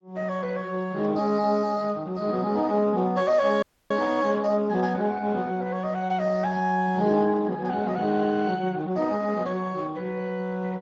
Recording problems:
codec artefacts; Speex, log-spectral distance 3 dB
audio cutting out; at 3.5 s

